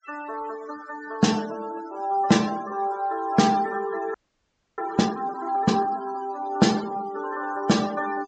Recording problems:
treble missing; nothing above 8 kHz
noise reduction artefacts; signal-to-artefact ratio 16 dB
audio freezing; at 4 s for 0.5 s

